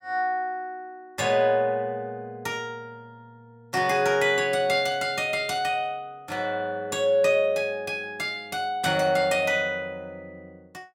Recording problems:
none

